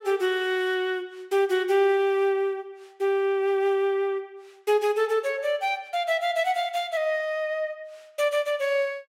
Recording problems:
none

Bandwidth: 16 kHz